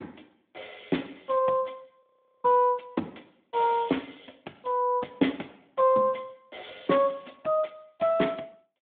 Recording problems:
telephone audio; 220 Hz to 3.6 kHz, Speex
audio freezing; at 2 s

